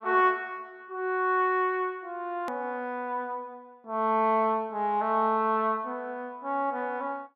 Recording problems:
hard cut with a click; at 2.5 s

